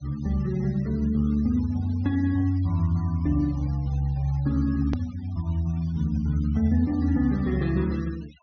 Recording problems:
treble cut off; nothing above 6.3 kHz
noise reduction artefacts; signal-to-artefact ratio 25 dB
hard cut with a click; at 5 s

